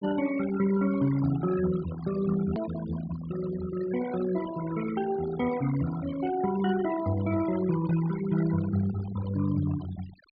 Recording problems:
treble cut off; nothing above 4.9 kHz
denoising artefacts; signal-to-artefact ratio 13 dB
hard cut with a click; at 2.5 s

